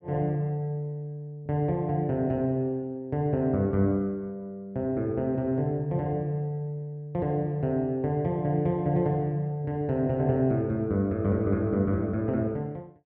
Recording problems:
none

